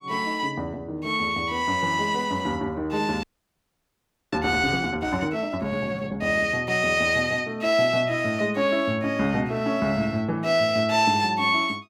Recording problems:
frozen audio; at 3 s for 1 s

